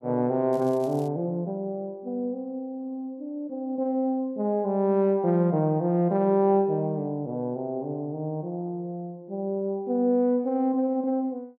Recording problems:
crackling; at 0.5 s; loose cable, SNR 27 dB

